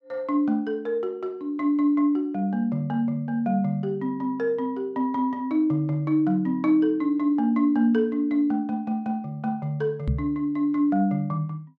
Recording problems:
microphone thump; at 10 s; peak +2 dB vs average level

